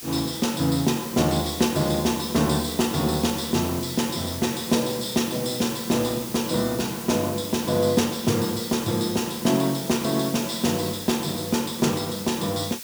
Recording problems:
background hiss; slope +2 dB per octave, SNR 10 dB

